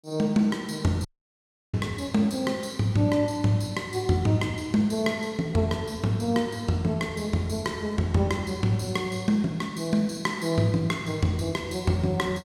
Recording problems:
audio cutting out; at 1 s for 0.5 s

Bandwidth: 16.5 kHz